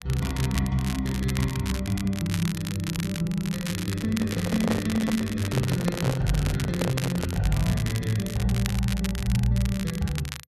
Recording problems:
crackle; vinyl, SNR 10 dB
microphone handling noise; from 4 to 7.5 s; peak +2 dB vs average level

